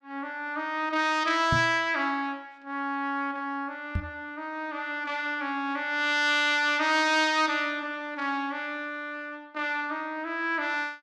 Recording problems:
microphone bump; at 1.5 s and at 4 s; peak +2 dB vs average level

